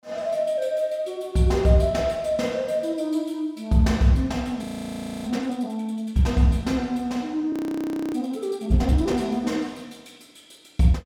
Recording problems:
frozen audio; at 4.5 s for 0.5 s and at 7.5 s for 0.5 s

